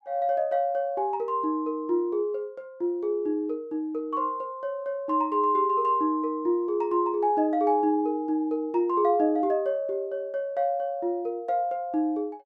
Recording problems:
none

